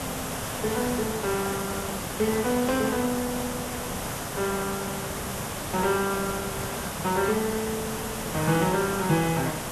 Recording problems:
codec artefacts; Vorbis, log-spectral distance 12 dB, nothing above 13.1 kHz
background hiss; SNR 3 dB

